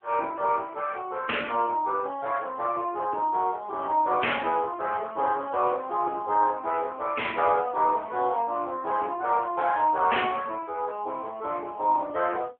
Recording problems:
telephone audio; 280 Hz to 3.4 kHz, AMR-NB

